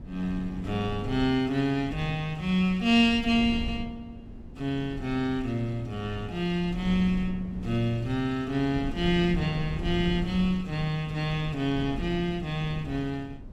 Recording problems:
wind noise; below 210 Hz, SNR 11 dB

